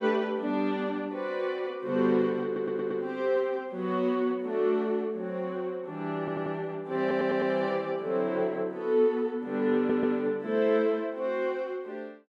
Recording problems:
stutter; 4 times, first at 2.5 s

